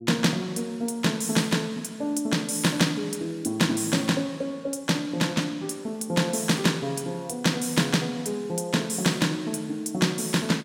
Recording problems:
none

